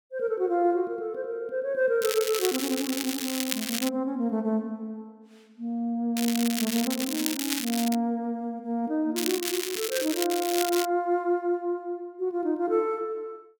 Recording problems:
crackling; from 2 to 4 s, from 6 to 8 s and from 9 to 11 s; loose cable, SNR 3 dB

